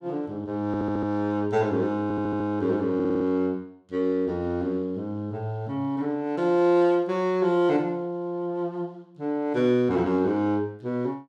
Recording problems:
audio stuttering; at 0.5 s, at 2 s and at 3 s

